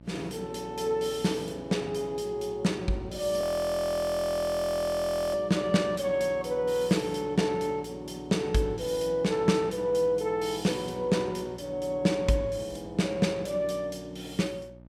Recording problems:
hum; 60 Hz, harmonics up to 960 Hz, SNR 22 dB
frozen audio; at 3.5 s for 2 s

